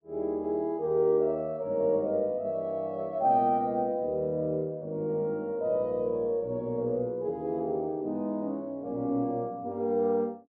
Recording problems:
low-pass filter; nothing above 7.9 kHz

